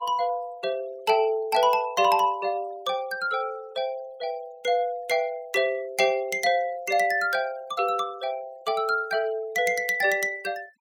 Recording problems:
noise reduction artefacts; signal-to-artefact ratio 25 dB

